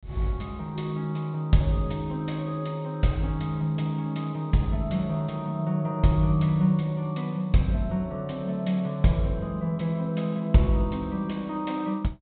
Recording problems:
treble missing; nothing above 4 kHz

